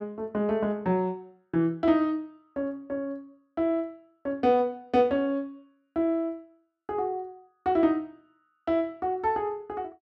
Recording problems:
none

